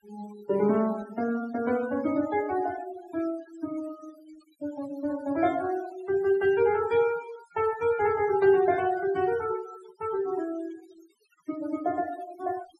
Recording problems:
noise reduction artefacts; signal-to-artefact ratio 18 dB

